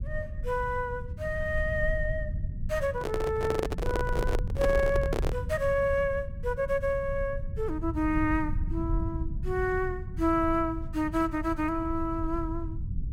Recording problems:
low-frequency rumble; below 98 Hz, SNR 5 dB
handling noise; from 3 to 5.5 s; peak +3 dB vs average level

